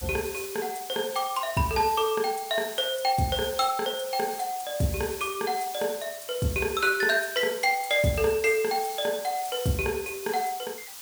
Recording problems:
background hiss; SNR 11 dB

